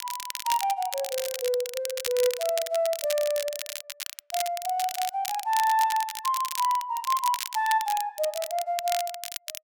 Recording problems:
crackle; vinyl, SNR 7 dB

